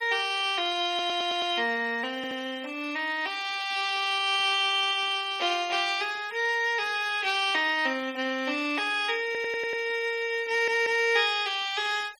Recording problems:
noise reduction artefacts; signal-to-artefact ratio 22 dB
stutter; 4 times, first at 1 s

